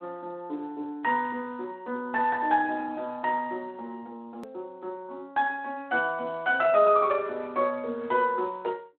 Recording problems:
phone line; 280 Hz to 3.4 kHz, Speex
hard cut with a click; at 4.5 s

